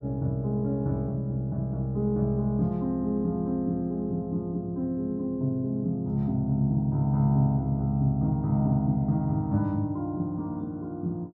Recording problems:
none

